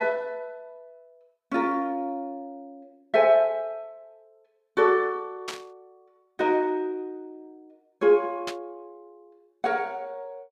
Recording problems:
static burst; at 5.5 s and at 8.5 s; peak -4 dB vs average level

